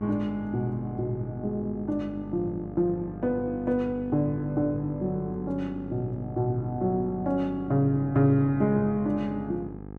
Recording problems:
hum; 50 Hz, harmonics up to 1.3 kHz, SNR 13 dB

